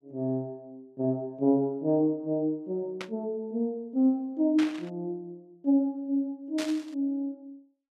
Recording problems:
burst of static; at 3 s, at 4.5 s and at 6.5 s; peak -4 dB vs average level

